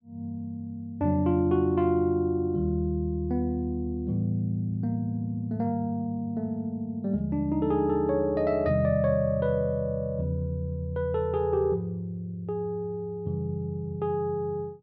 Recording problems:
none

